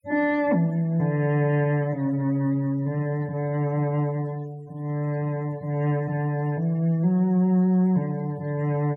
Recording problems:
denoising artefacts; signal-to-artefact ratio 27 dB

